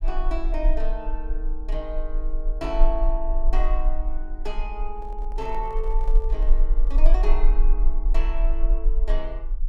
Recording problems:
rumble; below 34 Hz, strongest tone 22 Hz, SNR -7 dB
microphone handling noise; from 5 to 7 s; peak -8 dB vs average level

